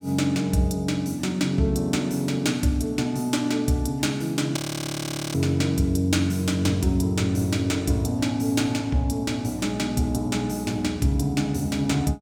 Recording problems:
audio freezing; at 4.5 s for 1 s

